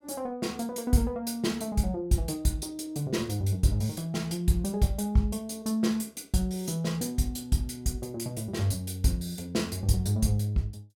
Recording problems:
none

